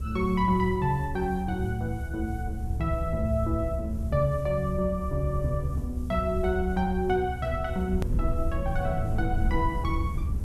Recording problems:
background hiss; slope +4 dB per octave, SNR 29 dB
rumble; below 78 Hz, SNR 4 dB
hard cut with a click; at 8 s

